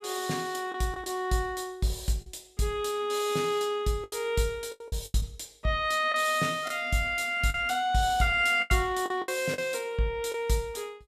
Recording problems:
packet loss; 7% of the sound replaced, filled with the last packet

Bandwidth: 15 kHz